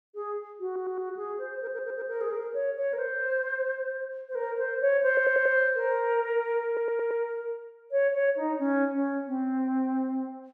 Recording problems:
audio stuttering; 4 times, first at 0.5 s

